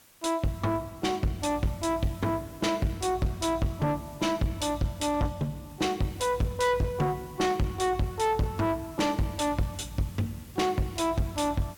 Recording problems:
distorted audio; soft clipping, signal-to-distortion ratio 6 dB
background hiss; slope -1 dB per octave, SNR 23 dB

